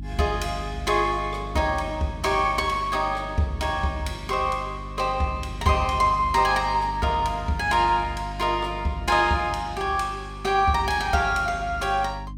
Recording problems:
hum; 50 Hz, harmonics up to 300 Hz, SNR 13 dB

